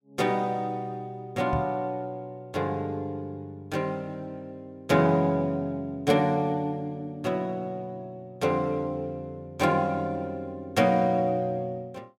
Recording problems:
microphone bump; at 1.5 s; peak 0 dB vs average level

